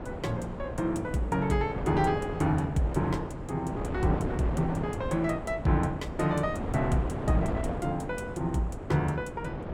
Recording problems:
wind on the microphone; below 550 Hz, SNR 6 dB

